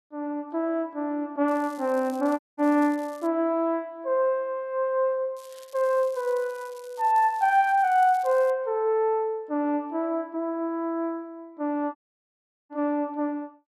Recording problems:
crackle; from 1.5 to 3.5 s and from 5.5 to 8.5 s; loose cable, SNR 26 dB
dropout; at 2.5 s and at 12 s for 0.5 s

